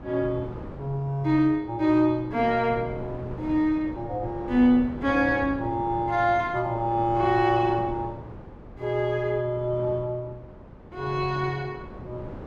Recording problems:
wind noise; below 470 Hz, SNR 15 dB

